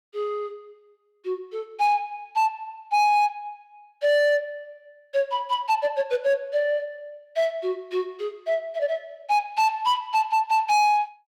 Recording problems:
distorted audio; hard clipping, signal-to-distortion ratio 10 dB

